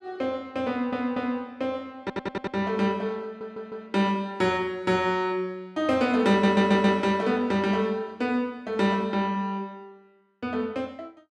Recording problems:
audio stuttering; 4 times, first at 0.5 s

